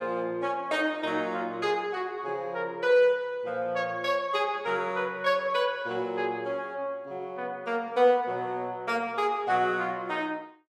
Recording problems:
none

